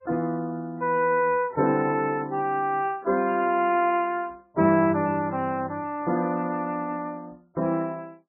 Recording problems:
codec artefacts; MP3, log-spectral distance 2 dB, nothing above 2.4 kHz

